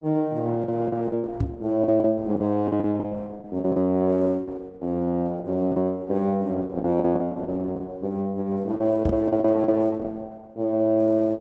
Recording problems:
lossy compression; Opus, log-spectral distance 2 dB
packet loss; 10% of the sound replaced, filled with the last packet
microphone thump; at 1.5 s and at 9 s; peak +5 dB vs average level

